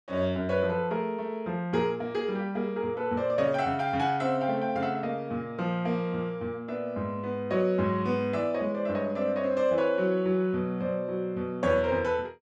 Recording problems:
none

